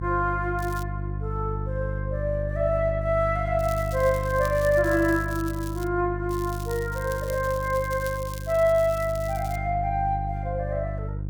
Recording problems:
hum; 50 Hz, harmonics up to 350 Hz, SNR 6 dB
crackling; at 0.5 s, from 3.5 to 6 s and from 6.5 to 9.5 s; loose cable, SNR 17 dB

